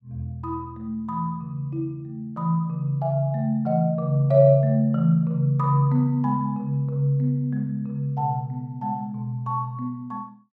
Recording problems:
none

